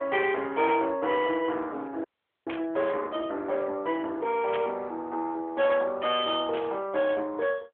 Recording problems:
telephone audio; 300 Hz to 3.7 kHz, AMR-NB
distortion; soft clipping, signal-to-distortion ratio 13 dB
frozen audio; at 2 s
static burst; at 2.5 s, at 4.5 s and at 6.5 s; peak -4 dB vs average level

